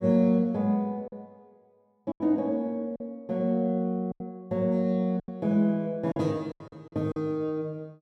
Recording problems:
lost packets; 8% of the sound replaced, filled with silence

